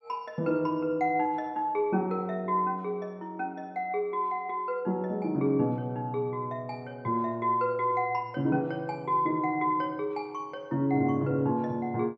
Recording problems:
none

